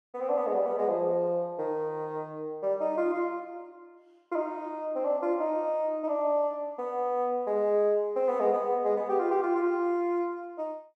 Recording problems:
none

